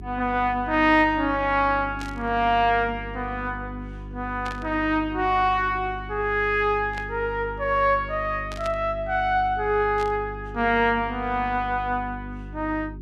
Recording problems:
hum; 50 Hz, harmonics up to 400 Hz, SNR 14 dB
static burst; 5 times, first at 2 s; peak -10 dB vs average level

